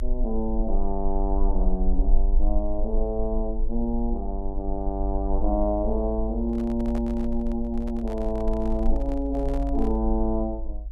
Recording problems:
rumble; below 50 Hz, strongest tone 20 Hz, SNR 2 dB
microphone handling noise; from 6.5 to 10 s; peak -8 dB vs average level

